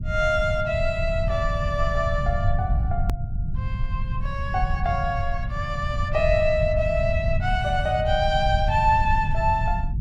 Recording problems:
low-frequency rumble; below 110 Hz, SNR 3 dB
edit click; at 3 s

